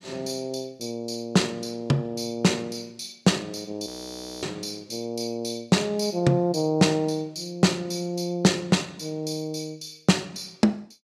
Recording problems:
frozen audio; at 4 s for 0.5 s

